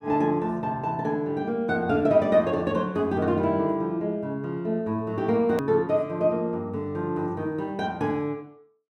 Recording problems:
click at an edit; at 5.5 s

